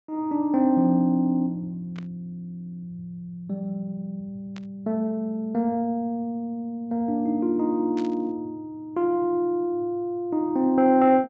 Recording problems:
treble cut off; nothing above 8 kHz
static burst; at 2 s, at 4.5 s and at 8 s; peak -13 dB vs average level

